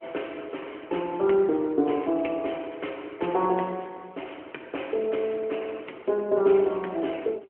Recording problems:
phone line; 260 Hz to 3.1 kHz, AMR-NB

